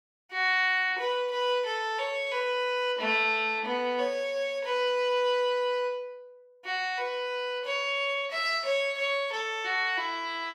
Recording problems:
none

